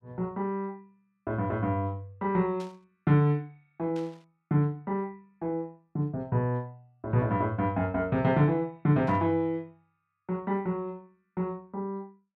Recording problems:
static burst; at 2.5 s, at 4 s and at 9 s; peak -15 dB vs average level

